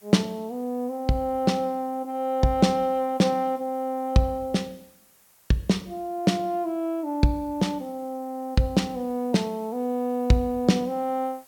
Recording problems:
background hiss; SNR 29 dB

